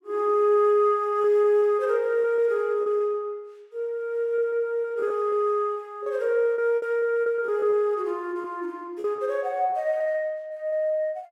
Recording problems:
packet loss; 7% of the sound replaced, filled with repeated pitch periods

